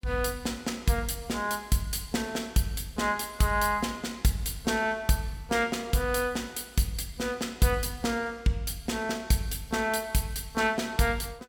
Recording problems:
none

